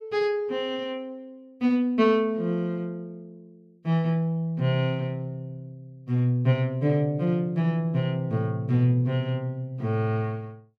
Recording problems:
none

